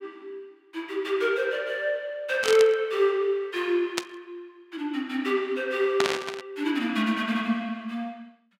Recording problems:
static burst; at 2.5 s, at 4 s and at 6 s; peak +5 dB vs average level

